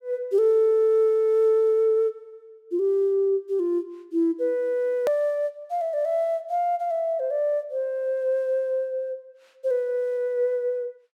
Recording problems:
edit click; at 5 s

